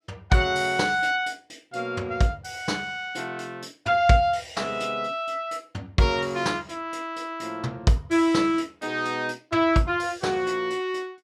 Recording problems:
none

